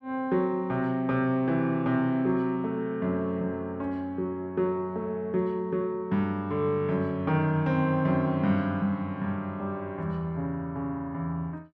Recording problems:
none

